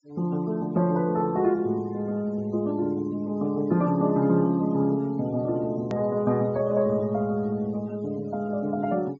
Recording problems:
low-pass filter; nothing above 7.3 kHz
noise reduction artefacts; signal-to-artefact ratio 27 dB
edit click; at 6 s

